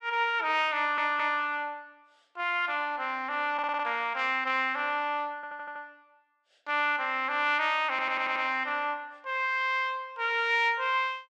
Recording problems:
audio stuttering; 4 times, first at 1 s

